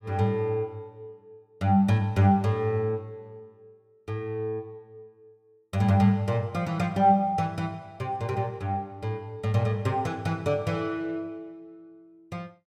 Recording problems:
none

